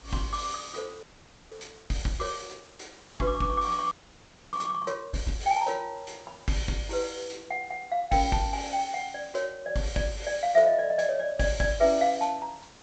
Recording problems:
low-pass filter; nothing above 8 kHz
hiss; slope -3 dB per octave, SNR 24 dB
audio freezing; at 1 s and at 4 s for 0.5 s

